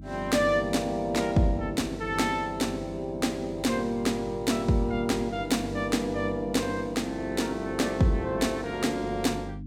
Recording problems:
electrical hum; 50 Hz, harmonics up to 300 Hz, SNR 14 dB

